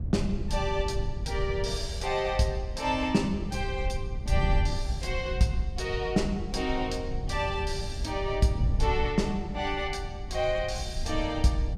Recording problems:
wind on the microphone; below 92 Hz, SNR 4 dB

